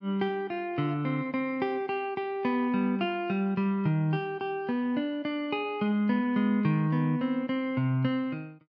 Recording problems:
none

